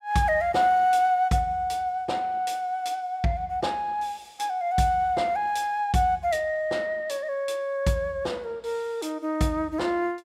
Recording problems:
none

